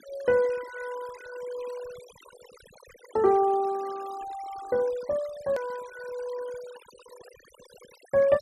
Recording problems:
denoising artefacts; signal-to-artefact ratio 19 dB
edit click; at 5.5 s

